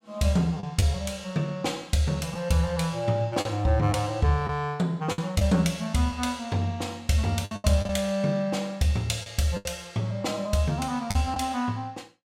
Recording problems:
packet loss; 5% of the sound replaced, filled with the last packet

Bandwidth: 16 kHz